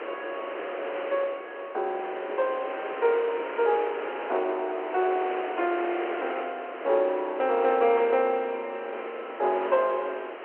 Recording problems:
phone line; 320 Hz to 3.2 kHz, G.711
wind on the microphone; below 1.6 kHz, SNR 8 dB

